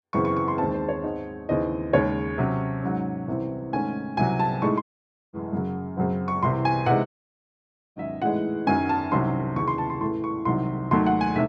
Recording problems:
dropout; at 5 s for 0.5 s and at 7 s for 1 s

